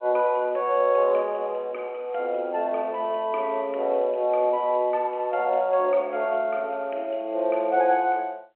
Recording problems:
phone line; 280 Hz to 3.4 kHz, G.711

